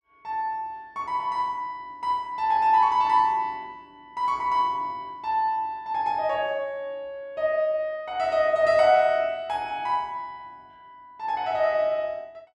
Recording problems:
none

